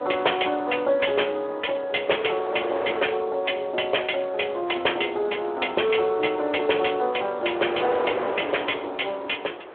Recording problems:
phone line; 320 Hz to 3.4 kHz, Speex
wind noise; below 1.1 kHz, SNR 11 dB

